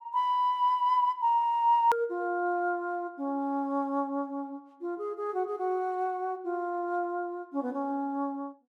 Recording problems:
hard cut with a click; at 2 s

